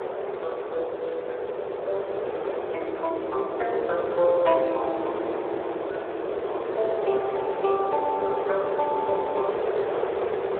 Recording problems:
telephone audio; 340 Hz to 2.8 kHz, Speex
wind noise; below 680 Hz, SNR 1 dB

